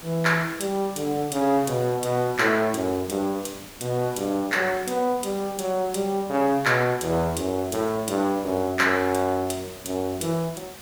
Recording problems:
background hiss; slope -2 dB per octave, SNR 17 dB

